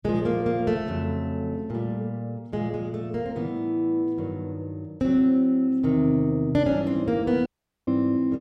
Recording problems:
dropout; at 7.5 s

